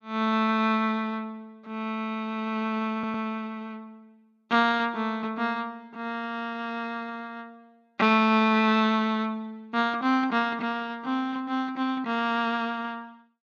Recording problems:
stutter; at 3 s

